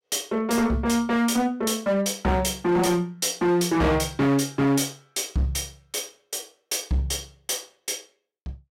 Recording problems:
distorted audio; hard clipping, signal-to-distortion ratio 8 dB

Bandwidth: 16 kHz